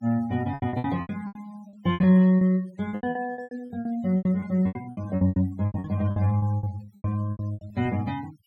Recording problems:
denoising artefacts; signal-to-artefact ratio 22 dB
packet loss; 23% of the sound replaced, filled with repeated pitch periods

